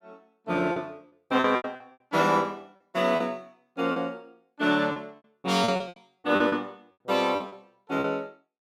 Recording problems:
packet loss; 13% of the sound replaced, filled with repeated pitch periods

